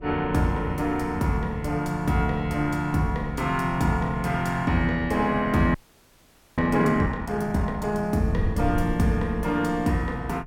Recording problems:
wind on the microphone; below 120 Hz, SNR 12 dB
frozen audio; at 5.5 s for 1 s

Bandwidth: 17 kHz